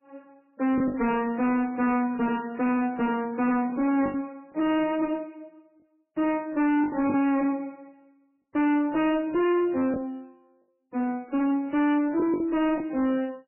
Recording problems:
lossy codec; MP3, log-spectral distance 2 dB, nothing above 2.7 kHz
distortion; hard clipping, signal-to-distortion ratio 8 dB
lost packets; 4% of the sound replaced, filled with the last packet

